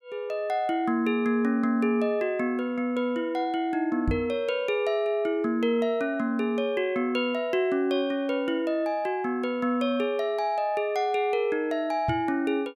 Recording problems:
microphone bump; at 4 s and at 12 s; peak +1 dB vs average level

